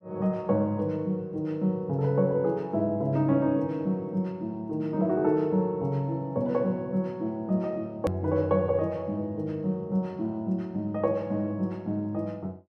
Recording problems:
edit click; at 8 s

